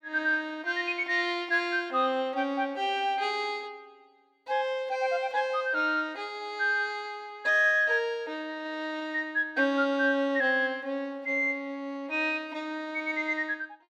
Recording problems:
none

